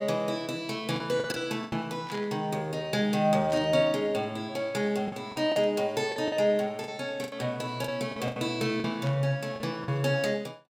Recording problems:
packet loss; 8% of the sound replaced, filled with the last packet
static burst; 4 times, first at 2 s; peak -9 dB vs average level

